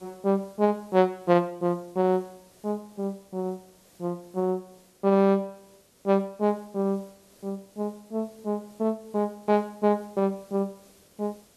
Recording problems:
hiss; SNR 29 dB

